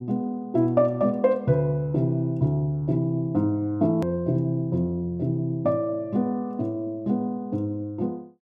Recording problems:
edit click; at 4 s

